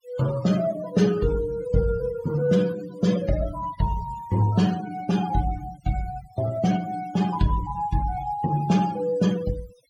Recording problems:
denoising artefacts; signal-to-artefact ratio 16 dB

